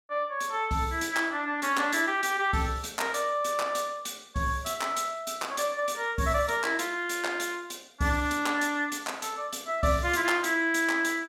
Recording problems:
none

